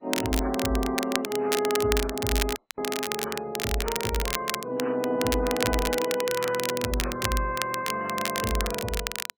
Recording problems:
codec artefacts; MP3, then MP2, log-spectral distance 3 dB
crackle; vinyl, SNR 4 dB
dropout; at 2.5 s

